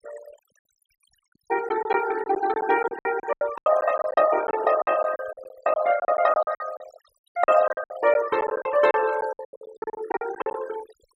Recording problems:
noise reduction artefacts; signal-to-artefact ratio 15 dB
lost packets; 17% of the sound replaced, filled with silence

